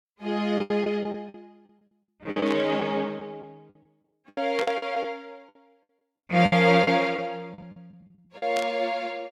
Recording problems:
lost packets; 12% of the sound replaced, filled with the last packet
burst of static; at 2.5 s, at 4.5 s and at 8.5 s; peak -3 dB vs average level

